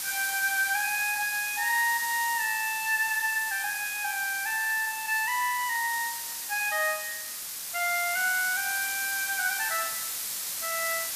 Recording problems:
background hiss; slope +3 dB per octave, SNR 4 dB

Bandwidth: 14.5 kHz